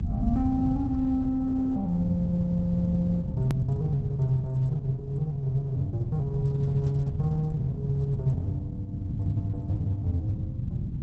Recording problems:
lossy compression; Opus, log-spectral distance 2 dB, nothing above 13.1 kHz
rumble; below 150 Hz, SNR 3 dB
hard cut with a click; at 3.5 s

